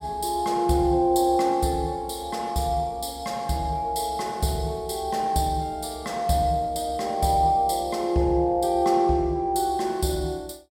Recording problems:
none

